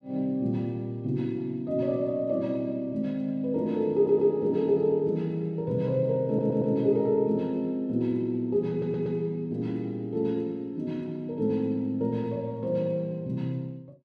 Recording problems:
audio stuttering; at 4 s, at 6.5 s and at 8.5 s

